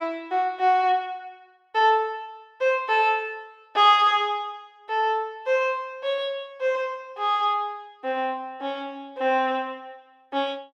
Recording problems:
none

